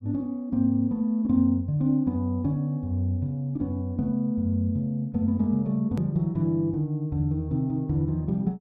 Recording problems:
click at an edit; at 6 s

